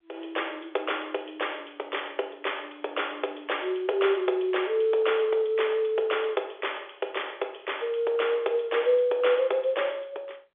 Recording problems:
telephone audio; 340 Hz to 3.6 kHz, G.711

